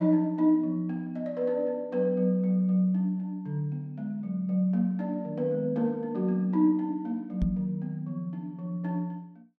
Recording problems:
microphone thump; at 7.5 s; peak +4 dB vs average level

